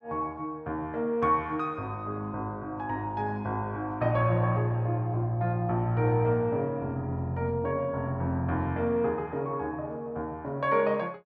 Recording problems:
none

